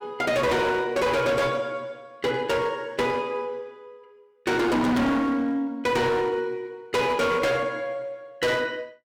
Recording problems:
distortion; hard clipping, signal-to-distortion ratio 7 dB

